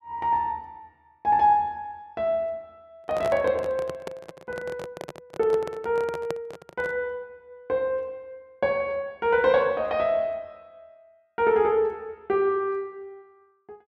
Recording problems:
microphone handling noise; from 3 to 7 s; peak -3 dB vs average level

